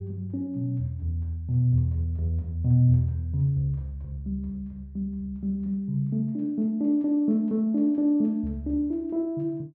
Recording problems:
none

